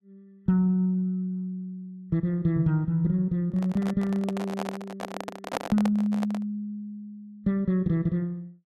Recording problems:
handling noise; from 3.5 to 6.5 s; peak +1 dB vs average level

